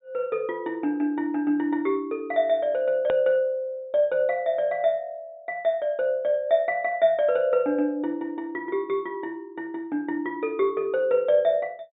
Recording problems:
low-pass filter; nothing above 4 kHz
edit click; at 3 s

